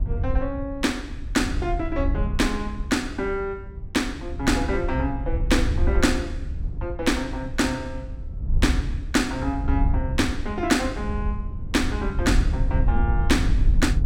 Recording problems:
wind noise; below 78 Hz, SNR 2 dB

